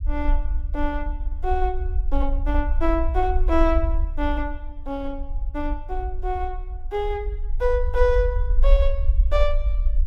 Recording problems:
rumble; below 52 Hz, SNR -1 dB

